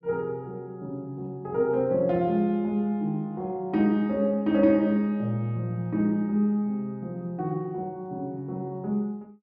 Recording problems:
none

